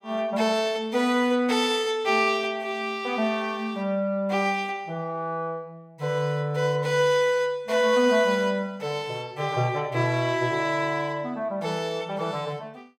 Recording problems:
none

